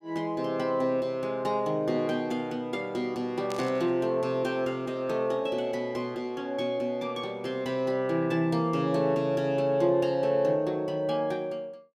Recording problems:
static burst; at 3.5 s; peak -7 dB vs average level

